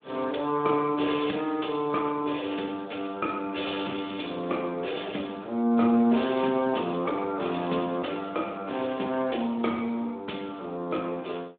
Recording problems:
telephone audio; 190 Hz to 3.6 kHz, Speex

